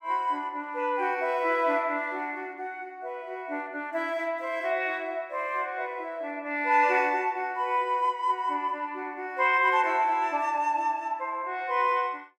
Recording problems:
none

